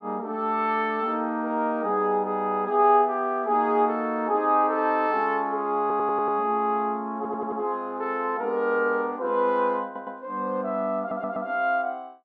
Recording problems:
audio stuttering; 4 times, first at 6 s

